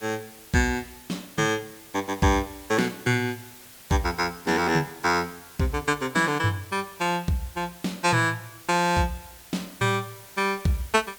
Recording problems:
hiss; slope 0 dB per octave, SNR 19 dB

